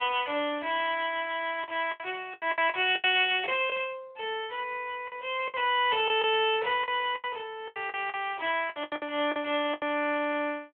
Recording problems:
phone line; 320 Hz to 3.4 kHz, Speex
lost packets; 11% of the sound replaced, filled with the last packet

